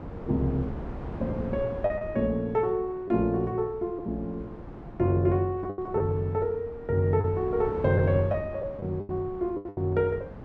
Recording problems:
wind on the microphone; below 450 Hz, SNR 13 dB
packet loss; 6% of the sound replaced, filled with the last packet

